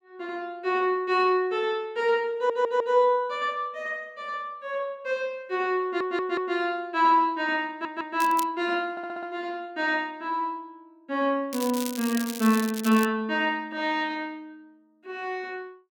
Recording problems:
audio stuttering; 4 times, first at 2.5 s
crackling; at 8 s and from 12 to 13 s; loose cable, SNR 10 dB

